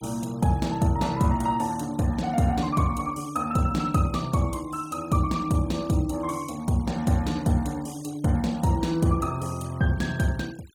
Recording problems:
denoising artefacts; signal-to-artefact ratio 23 dB

